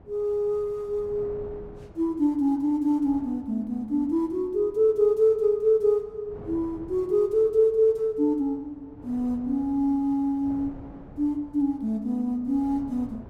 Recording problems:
wind on the microphone; below 410 Hz, SNR 22 dB

